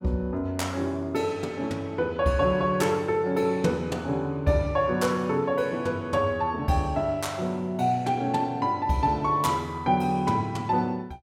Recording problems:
none

